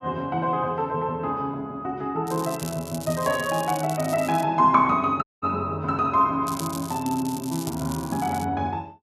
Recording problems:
crackling; from 2.5 to 4.5 s and from 6.5 to 8.5 s; loose cable, SNR 14 dB
dropout; at 5 s

